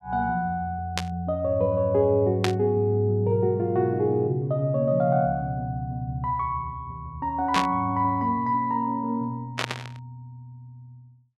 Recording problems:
static burst; 4 times, first at 1 s; peak +3 dB vs average level

